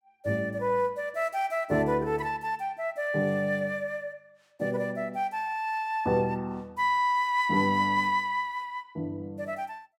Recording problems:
none

